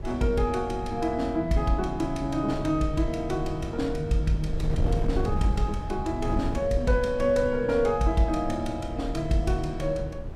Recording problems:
wind on the microphone; below 110 Hz, SNR 7 dB

